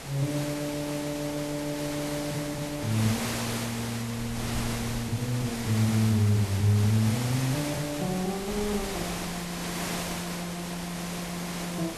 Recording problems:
hiss; slope -3 dB per octave, SNR 5 dB
wind on the microphone; below 180 Hz, SNR 19 dB

